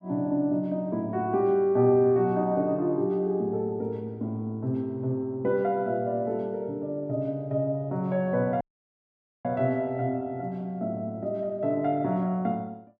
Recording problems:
dropout; at 8.5 s for 1 s

